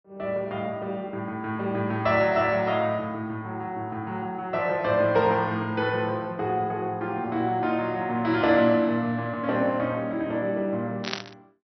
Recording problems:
treble missing; nothing above 5.9 kHz
static burst; at 11 s; peak +1 dB vs average level

